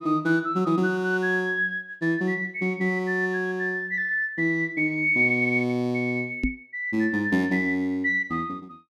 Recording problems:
microphone bump; at 6.5 s; peak +3 dB vs average level

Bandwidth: 14.5 kHz